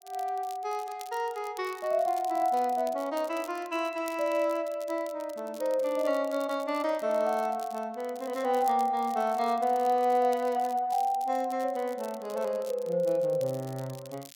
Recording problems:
crackle; vinyl, SNR 21 dB

